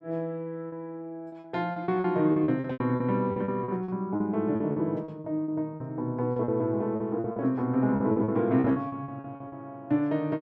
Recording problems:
packet loss; 15% of the sound replaced, filled with repeated pitch periods

